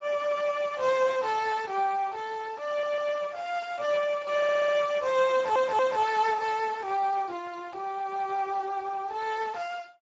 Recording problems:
codec artefacts; Speex, log-spectral distance 4 dB, nothing above 7.3 kHz
stutter; at 2.5 s, at 4.5 s and at 5.5 s

